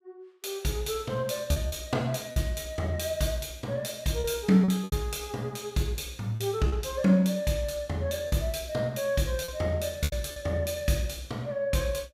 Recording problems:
packet loss; 5% of the sound replaced, filled with repeated pitch periods

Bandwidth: 15.5 kHz